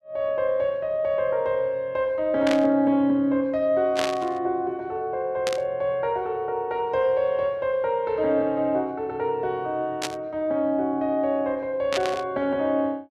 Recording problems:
burst of static; 5 times, first at 2.5 s; peak 0 dB vs average level

